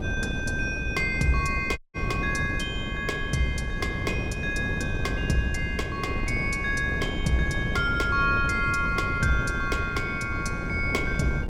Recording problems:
wind on the microphone; below 260 Hz, SNR 4 dB
dropout; at 2 s

